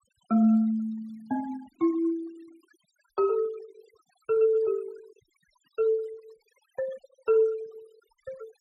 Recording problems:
denoising artefacts; signal-to-artefact ratio 26 dB

